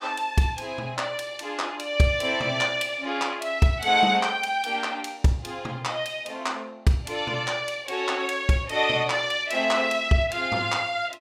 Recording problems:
none

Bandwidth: 16 kHz